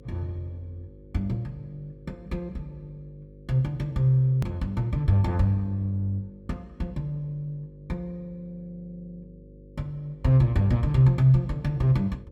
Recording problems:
hum; 50 Hz, harmonics up to 550 Hz, SNR 24 dB
hard cut with a click; at 4.5 s

